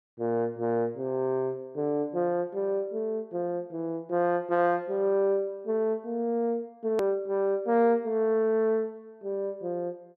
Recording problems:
edit click; at 7 s

